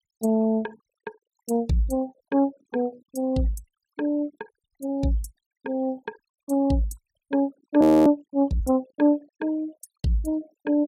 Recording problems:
denoising artefacts; signal-to-artefact ratio 27 dB
frozen audio; at 8 s

